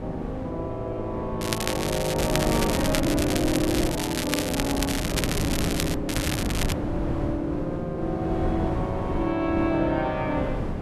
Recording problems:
wind on the microphone; below 370 Hz, SNR 3 dB
crackling; from 1.5 to 6 s and at 6 s; loose cable, SNR 2 dB

